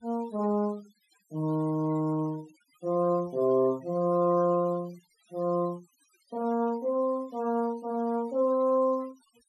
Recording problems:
noise reduction artefacts; signal-to-artefact ratio 27 dB

